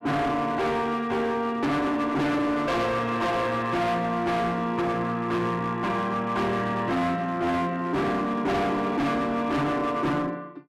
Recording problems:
distortion; hard clipping, signal-to-distortion ratio 7 dB

